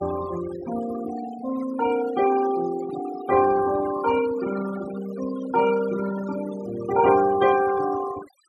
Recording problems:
denoising artefacts; signal-to-artefact ratio 13 dB

